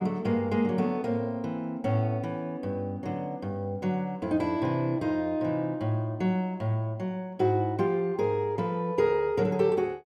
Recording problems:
none

